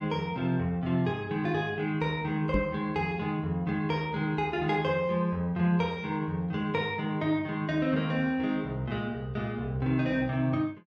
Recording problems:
microphone thump; at 2.5 s; peak +4 dB vs average level

